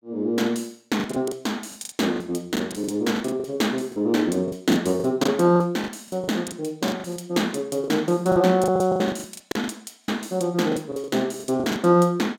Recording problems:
lost packets; 14% of the sound replaced, filled with the last packet

